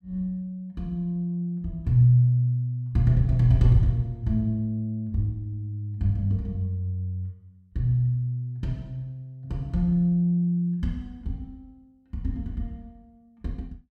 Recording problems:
none

